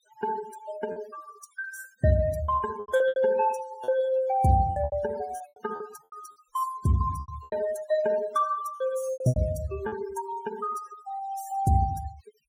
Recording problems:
denoising artefacts; signal-to-artefact ratio 17 dB
packet loss; 10% of the sound replaced, filled with repeated pitch periods

